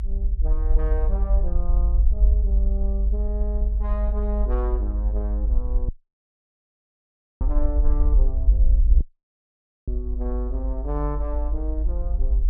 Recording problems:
low-frequency rumble; below 52 Hz, strongest tone 50 Hz, SNR -11 dB
dropout; at 6 s for 1.5 s and at 9 s for 1 s

